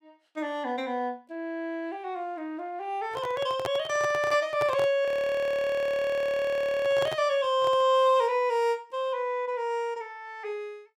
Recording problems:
microphone handling noise; from 3 to 8 s; peak -1 dB vs average level
audio freezing; at 5 s for 2 s

